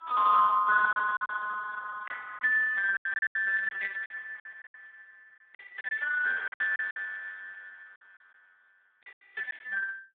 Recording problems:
telephone audio; 170 Hz to 2 kHz, Speex
packet loss; 12% of the sound replaced, filled with silence

